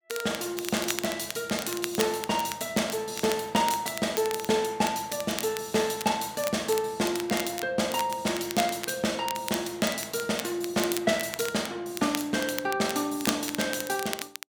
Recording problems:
crackling; vinyl, SNR 9 dB

